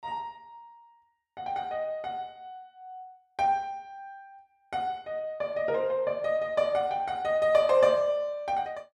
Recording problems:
none

